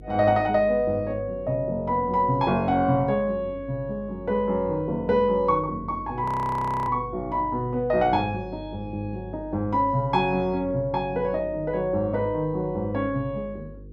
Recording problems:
electrical hum; 50 Hz, harmonics up to 500 Hz, SNR 18 dB
frozen audio; at 6 s for 0.5 s

